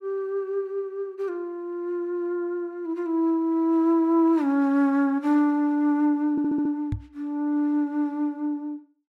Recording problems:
audio stuttering; at 6.5 s
microphone thump; at 7 s; peak -1 dB vs average level

